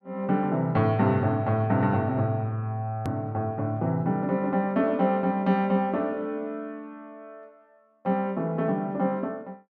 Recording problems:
edit click; at 3 s

